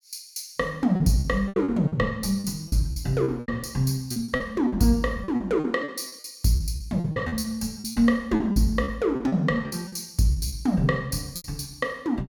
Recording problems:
lost packets; 14% of the sound replaced, filled with repeated pitch periods

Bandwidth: 17.5 kHz